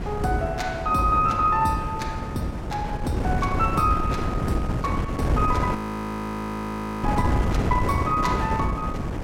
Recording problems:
wind on the microphone; below 360 Hz, SNR 2 dB
frozen audio; at 6 s for 1.5 s

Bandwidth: 16.5 kHz